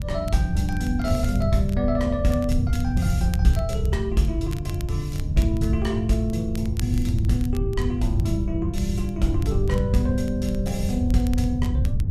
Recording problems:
wind on the microphone; below 110 Hz, SNR 1 dB
crackle; vinyl, SNR 21 dB

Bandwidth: 14.5 kHz